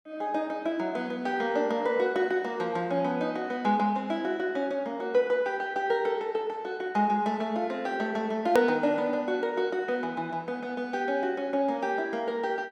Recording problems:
edit click; at 8.5 s

